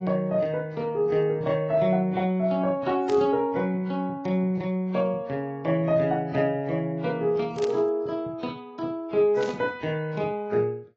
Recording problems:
lossy codec; AAC, then AAC, log-spectral distance 2 dB, nothing above 6.3 kHz
static burst; at 3 s, at 7.5 s and at 9.5 s; peak -8 dB vs average level

